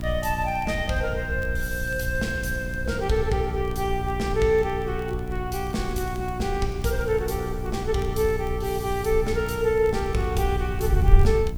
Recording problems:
electrical hum; 60 Hz, harmonics up to 1 kHz, SNR 9 dB
background hiss; SNR 29 dB
wind noise; below 84 Hz, SNR 5 dB
crackling; vinyl, SNR 29 dB

